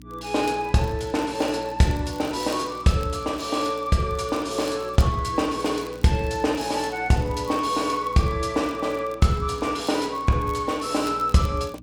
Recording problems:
electrical hum; 60 Hz, harmonics up to 300 Hz, SNR 21 dB
crackle; vinyl, SNR 26 dB

